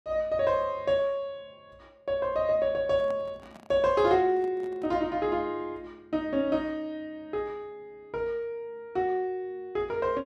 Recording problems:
handling noise; from 3 to 5 s; peak -12 dB vs average level

